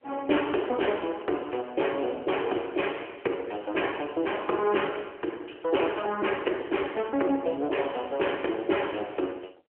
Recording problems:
phone line; 280 Hz to 3.2 kHz, AMR-NB
crackle; from 1 to 3 s and at 3 s; loose cable, SNR 27 dB

